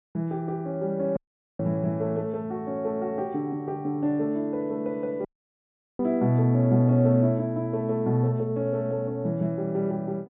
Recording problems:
treble missing; nothing above 4 kHz
dropout; at 1 s and at 5.5 s for 0.5 s

